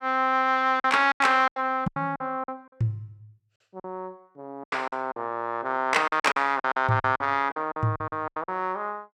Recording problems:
lost packets; 14% of the sound replaced, filled with silence

